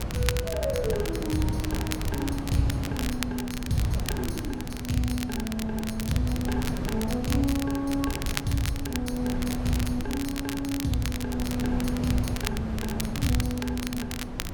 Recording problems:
wind noise; below 230 Hz, SNR 4 dB
crackle; vinyl, SNR 7 dB

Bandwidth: 17 kHz